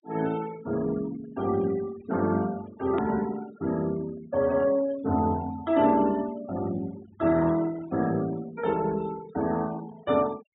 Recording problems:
treble cut off; nothing above 4 kHz
denoising artefacts; signal-to-artefact ratio 19 dB
edit click; at 3 s

